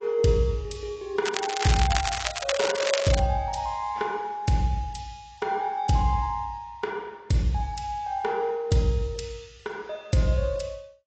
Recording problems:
lossy compression; AAC, log-spectral distance 4 dB, nothing above 7.8 kHz
crackle; from 1.5 to 3 s; loose cable, SNR 3 dB

